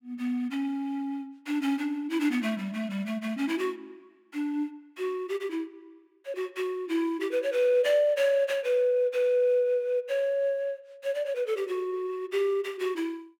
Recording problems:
none

